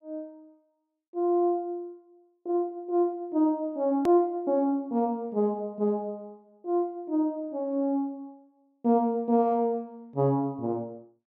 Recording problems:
hard cut with a click; at 4 s

